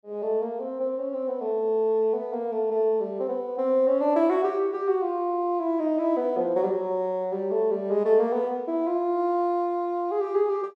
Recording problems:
none

